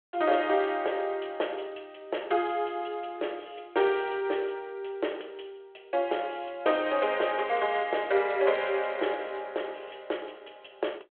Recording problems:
telephone audio; 300 Hz to 3.4 kHz, G.726

